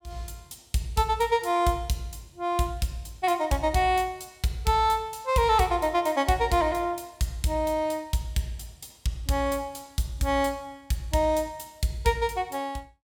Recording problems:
none

